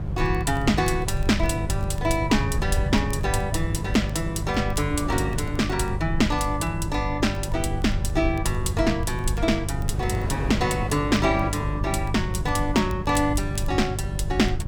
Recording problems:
hum; 50 Hz, harmonics up to 550 Hz, SNR 6 dB
rumble; below 88 Hz, SNR 7 dB
wind noise; below 480 Hz, SNR 12 dB
crackle; vinyl, SNR 29 dB

